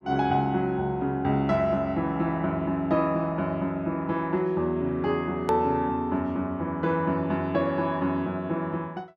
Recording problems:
edit click; at 5.5 s

